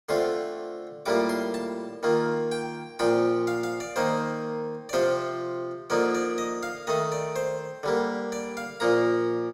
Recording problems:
none

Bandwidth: 16 kHz